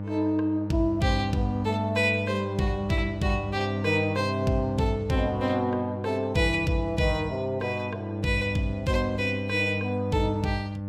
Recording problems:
hum; 50 Hz, harmonics up to 900 Hz, SNR 6 dB

